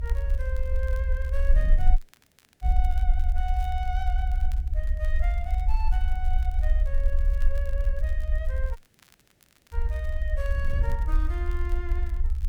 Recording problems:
background hiss; SNR 26 dB
low-frequency rumble; below 54 Hz, SNR -11 dB
wind noise; below 78 Hz, SNR 0 dB
crackling; vinyl, SNR 19 dB
dropout; at 2 s for 0.5 s and at 9 s for 1 s

